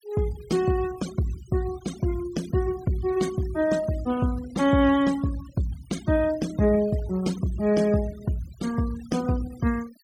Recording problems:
denoising artefacts; signal-to-artefact ratio 18 dB

